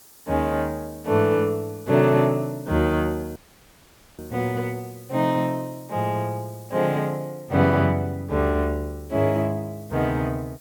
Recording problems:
background hiss; SNR 24 dB
dropout; at 3.5 s for 1 s

